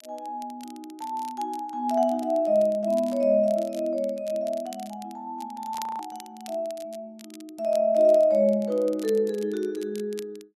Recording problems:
crackle; vinyl, SNR 23 dB
frozen audio; at 6 s

